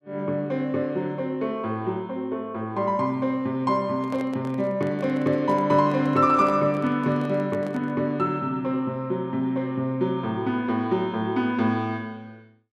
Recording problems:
microphone handling noise; from 4 to 8 s; peak -9 dB vs average level

